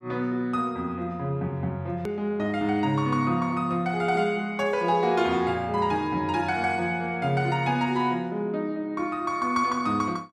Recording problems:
hard cut with a click; at 2 s

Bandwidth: 14 kHz